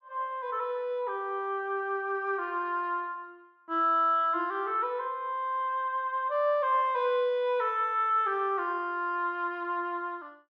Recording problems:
none

